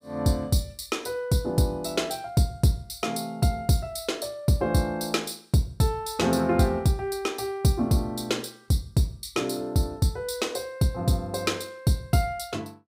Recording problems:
none

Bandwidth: 15.5 kHz